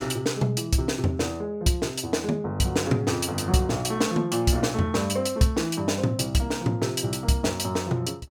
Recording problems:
none

